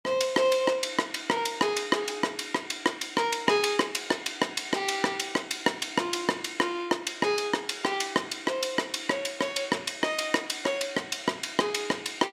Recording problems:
none

